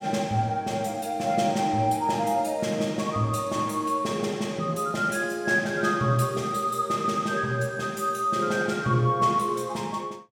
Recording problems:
none

